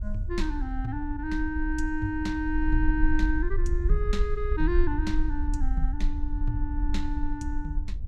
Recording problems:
wind noise; below 52 Hz, SNR -1 dB

